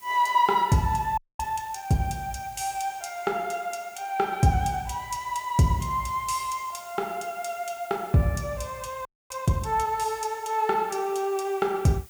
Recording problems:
background hiss; slope -1 dB per octave, SNR 22 dB
audio freezing; at 1 s and at 9 s

